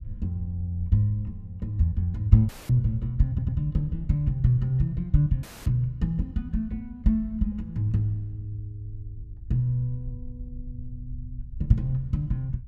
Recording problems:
rumble; below 74 Hz, SNR 17 dB
audio cutting out; at 2.5 s and at 5.5 s
stutter; at 3.5 s

